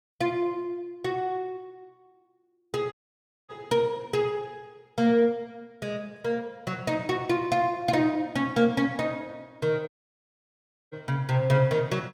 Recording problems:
audio cutting out; at 3 s for 0.5 s and at 10 s for 1 s

